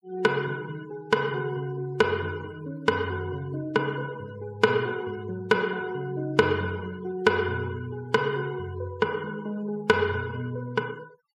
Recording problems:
denoising artefacts; signal-to-artefact ratio 22 dB

